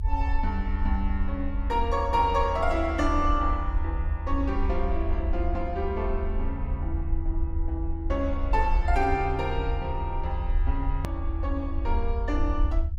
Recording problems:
rumble; below 76 Hz, SNR 0 dB
hard cut with a click; at 11 s

